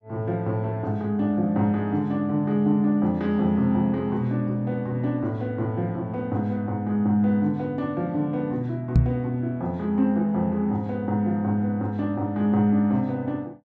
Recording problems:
knock on the microphone; at 9 s; peak +8 dB vs average level

